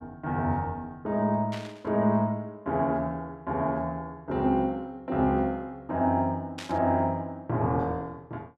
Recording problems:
static burst; at 1.5 s and at 6.5 s; peak -7 dB vs average level

